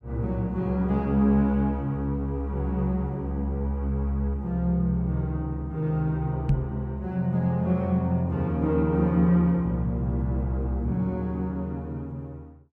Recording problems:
microphone thump; at 6.5 s; peak +4 dB vs average level

